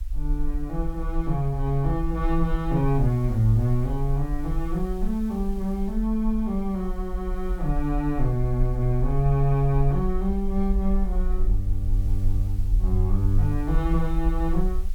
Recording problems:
background hiss; slope -1 dB per octave, SNR 29 dB
rumble; below 46 Hz, SNR 4 dB

